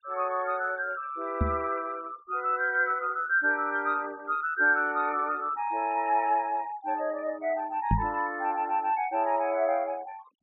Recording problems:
low-pass filter; nothing above 4 kHz
noise reduction artefacts; signal-to-artefact ratio 26 dB
microphone bump; at 1.5 s and at 8 s; peak +5 dB vs average level

